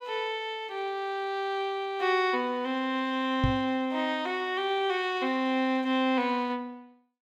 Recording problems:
knock on the microphone; at 3.5 s; peak +5 dB vs average level

